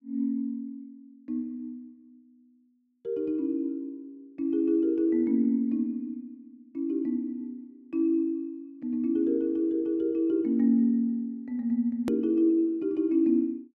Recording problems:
click at an edit; at 12 s

